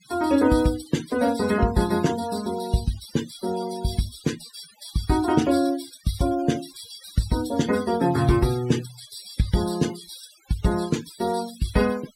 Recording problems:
denoising artefacts; signal-to-artefact ratio 15 dB

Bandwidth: 16 kHz